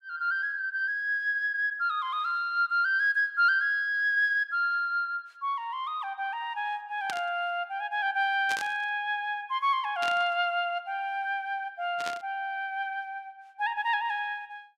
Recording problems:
burst of static; 4 times, first at 7 s; peak -4 dB vs average level

